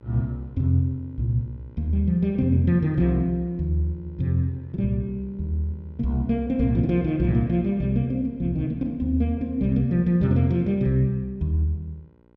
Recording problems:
electrical hum; 60 Hz, harmonics up to 1.6 kHz, SNR 28 dB

